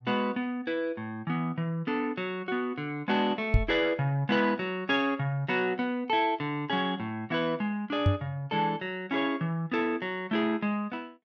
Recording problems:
knock on the microphone; at 3.5 s and at 8 s; peak +9 dB vs average level

